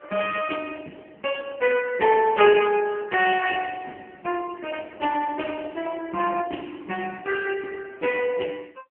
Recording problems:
phone line; 280 Hz to 3.1 kHz, AMR-NB

